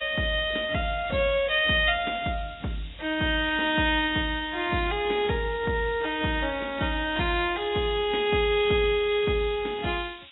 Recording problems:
lossy compression; AAC, log-spectral distance 16 dB, nothing above 3.4 kHz
hiss; SNR 21 dB
crackling; from 5.5 to 8 s; loose cable, SNR 30 dB

